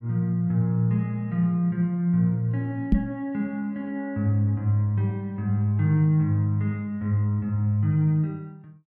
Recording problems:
knock on the microphone; at 3 s; peak +7 dB vs average level

